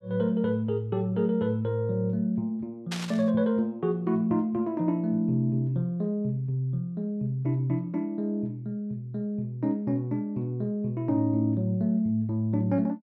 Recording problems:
burst of static; at 3 s; peak -2 dB vs average level

